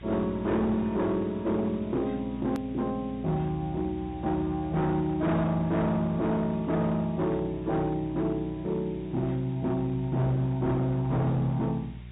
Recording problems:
treble missing; nothing above 4 kHz
distortion; hard clipping, signal-to-distortion ratio 10 dB
electrical hum; 60 Hz, harmonics up to 420 Hz, SNR 16 dB
background hiss; SNR 27 dB
hard cut with a click; at 2.5 s

